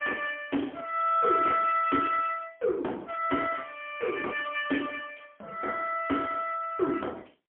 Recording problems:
phone line; 260 Hz to 3.2 kHz, AMR-NB, then MP3

